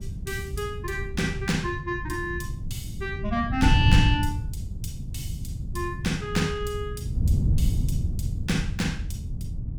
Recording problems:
wind noise; below 130 Hz, SNR 0 dB

